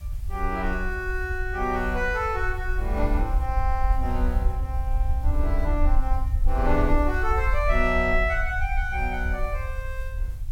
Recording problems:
hiss; SNR 27 dB
rumble; below 60 Hz, SNR 1 dB

